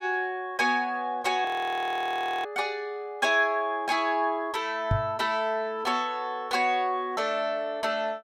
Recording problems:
audio freezing; at 1.5 s for 1 s
knock on the microphone; at 5 s; peak +4 dB vs average level

